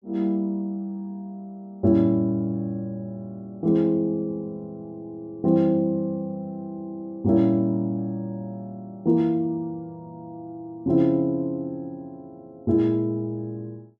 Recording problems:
none

